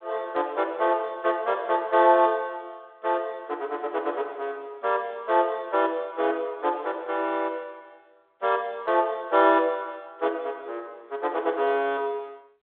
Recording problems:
telephone audio; 280 Hz to 3.6 kHz, G.726

